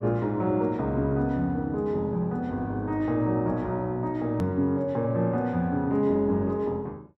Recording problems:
click at an edit; at 4.5 s

